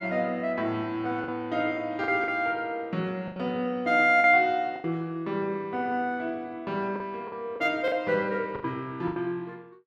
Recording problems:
lost packets; 7% of the sound replaced, filled with the last packet

